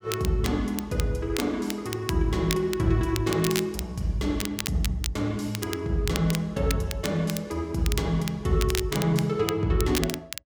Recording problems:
crackle; vinyl, SNR 9 dB

